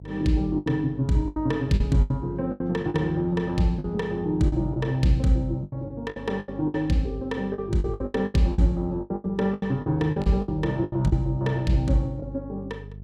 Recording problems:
hum; 50 Hz, harmonics up to 450 Hz, SNR 17 dB
packet loss; 13% of the sound replaced, filled with the last packet

